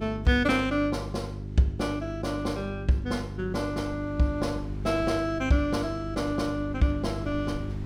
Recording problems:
electrical hum; 50 Hz, harmonics up to 400 Hz, SNR 8 dB
wind noise; below 170 Hz, SNR 20 dB

